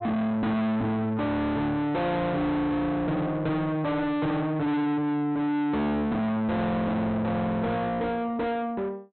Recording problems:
treble cut off; nothing above 4.1 kHz
distortion; soft clipping, signal-to-distortion ratio 6 dB

